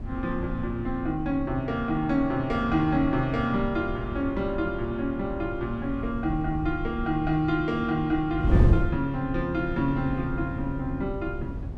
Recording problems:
wind noise; below 130 Hz, SNR 6 dB

